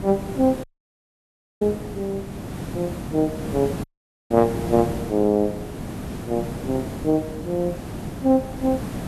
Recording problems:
hiss; slope -7 dB per octave, SNR 8 dB
dropout; at 0.5 s for 1 s and at 4 s

